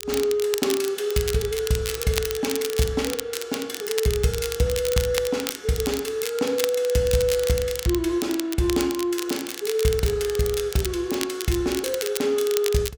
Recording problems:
crackle; vinyl, SNR 8 dB

